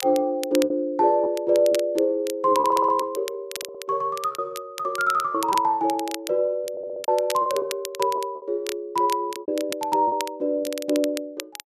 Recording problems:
crackle; vinyl, SNR 13 dB
packet loss; 8% of the sound replaced, filled with repeated pitch periods
audio stuttering; at 2.5 s, at 3.5 s and at 6.5 s

